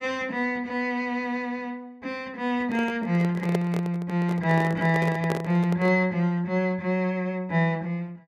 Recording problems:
handling noise; from 2.5 to 6 s; peak +2 dB vs average level

